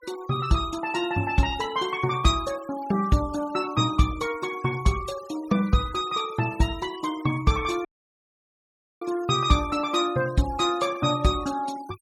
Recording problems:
noise reduction artefacts; signal-to-artefact ratio 20 dB
audio cutting out; at 8 s for 1 s

